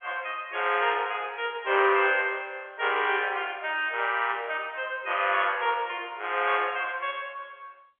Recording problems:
telephone audio; 320 Hz to 3.4 kHz, G.711

